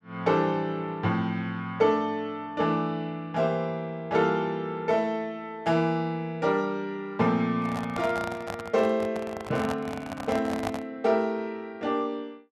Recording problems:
microphone handling noise; from 7.5 to 11 s; peak 0 dB vs average level

